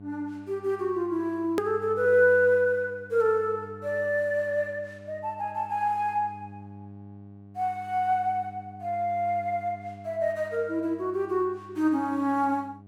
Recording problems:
electrical hum; 50 Hz, harmonics up to 800 Hz, SNR 20 dB
click at an edit; at 1.5 s

